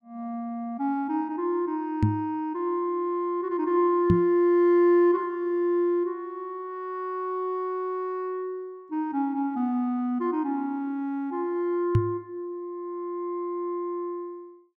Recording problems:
microphone thump; at 2 s, at 4 s and at 12 s; peak +9 dB vs average level

